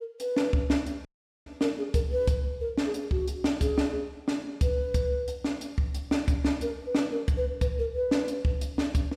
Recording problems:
dropout; at 1 s

